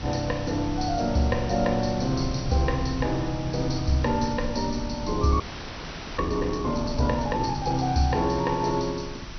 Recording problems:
low-pass filter; nothing above 6.1 kHz
hum; 50 Hz, harmonics up to 350 Hz, SNR 20 dB
hiss; slope -1 dB per octave, SNR 15 dB
rumble; below 110 Hz, SNR 12 dB
frozen audio; at 5.5 s for 1 s

